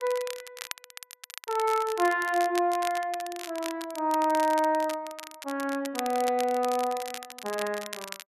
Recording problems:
crackling; vinyl, SNR 12 dB

